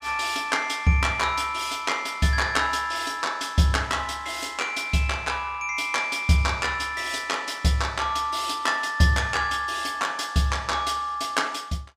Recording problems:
none

